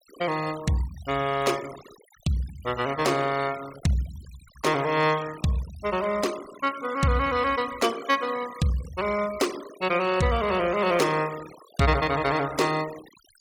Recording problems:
noise reduction artefacts; signal-to-artefact ratio 16 dB

